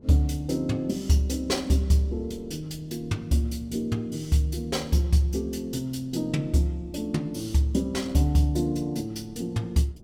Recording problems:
wind on the microphone; below 280 Hz, SNR 23 dB

